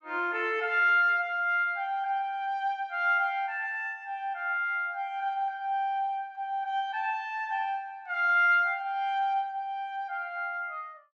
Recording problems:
none

